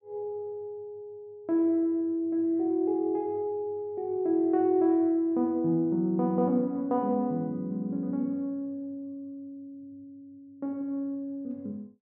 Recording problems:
none

